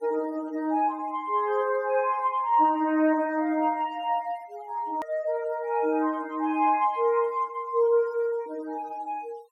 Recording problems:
denoising artefacts; signal-to-artefact ratio 27 dB
click at an edit; at 5 s

